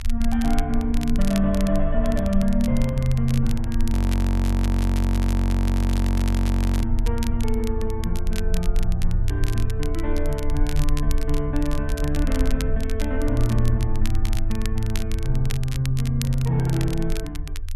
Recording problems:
low-frequency rumble; below 60 Hz, strongest tone 20 Hz, SNR 1 dB
crackling; vinyl, SNR 14 dB
audio freezing; at 4 s for 3 s

